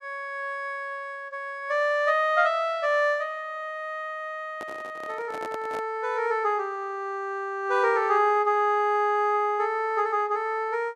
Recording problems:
handling noise; from 4.5 to 6 s; peak -8 dB vs average level

